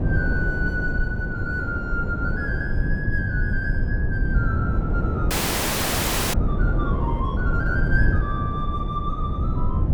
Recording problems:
low-frequency rumble; below 120 Hz, SNR -3 dB
wind noise; below 360 Hz, SNR 2 dB
frozen audio; at 5.5 s for 1 s

